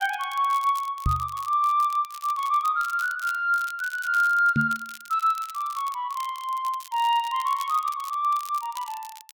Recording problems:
crackle; vinyl, SNR 19 dB
microphone thump; at 1 s and at 4.5 s; peak +3 dB vs average level

